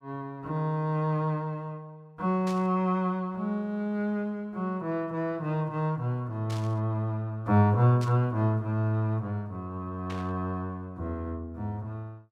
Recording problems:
burst of static; 4 times, first at 2.5 s; peak -9 dB vs average level

